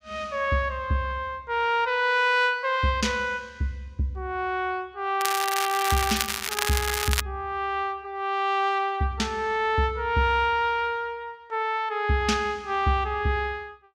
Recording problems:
crackle; from 5 to 7 s; loose cable, SNR 2 dB

